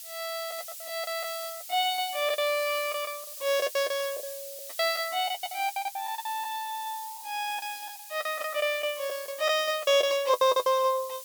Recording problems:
hiss; slope +7 dB per octave, SNR 11 dB
lost packets; 14% of the sound replaced, filled with the last packet

